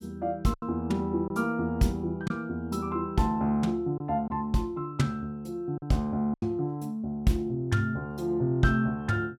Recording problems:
lost packets; 3% of the sound replaced, filled with silence

